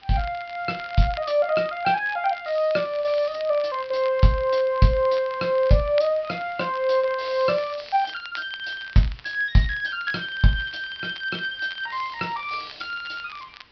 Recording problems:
treble missing; nothing above 5.5 kHz
background hiss; SNR 26 dB
crackling; vinyl, SNR 20 dB

